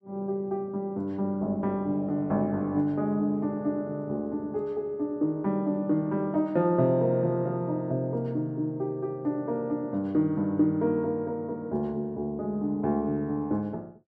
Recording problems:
none

